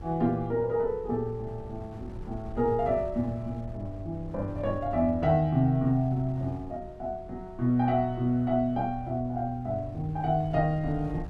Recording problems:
wind on the microphone; below 130 Hz, SNR 16 dB

